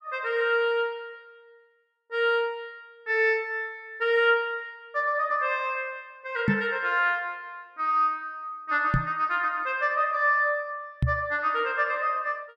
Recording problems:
microphone thump; at 6.5 s, at 9 s and at 11 s; peak +6 dB vs average level

